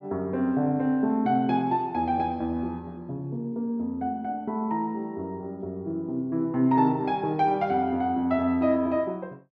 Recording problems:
none

